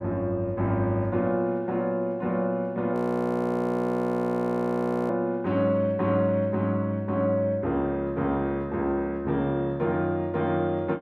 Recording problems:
audio freezing; at 3 s for 2 s

